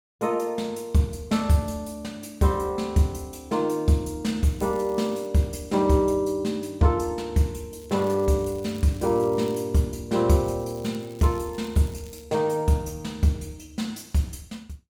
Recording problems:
crackle; at 4.5 s, from 8 to 9.5 s and from 10 to 12 s; loose cable, SNR 26 dB

